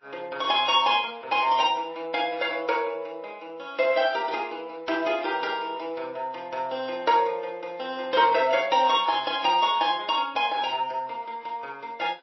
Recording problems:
codec artefacts; MP3, then Vorbis, log-spectral distance 3 dB, nothing above 5.7 kHz

